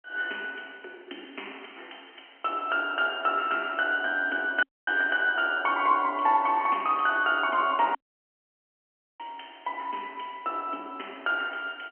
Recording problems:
phone line; 240 Hz to 3.2 kHz, G.711
dropout; at 4.5 s and at 8 s for 1 s

